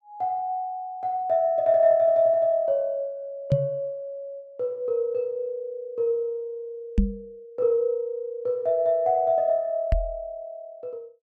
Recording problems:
microphone bump; at 3.5 s, at 7 s and at 10 s; peak +7 dB vs average level

